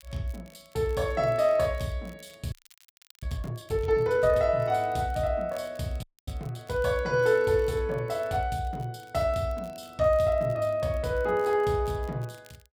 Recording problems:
crackling; vinyl, SNR 30 dB
frozen audio; at 2.5 s for 0.5 s and at 6 s

